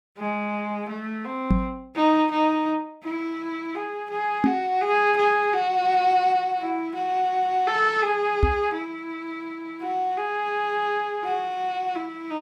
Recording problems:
knock on the microphone; at 1.5 s, at 4.5 s and at 8.5 s; peak +8 dB vs average level

